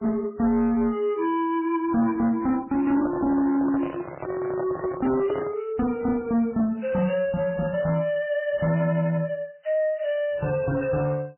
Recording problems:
lossy compression; MP3, then MP3, log-spectral distance 2 dB, nothing above 3 kHz
distortion; soft clipping, signal-to-distortion ratio 11 dB
microphone handling noise; from 3 to 5.5 s; peak -4 dB vs average level

